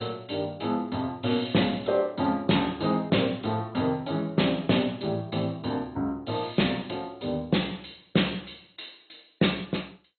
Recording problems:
lossy codec; MP2, log-spectral distance 8 dB, nothing above 4.2 kHz

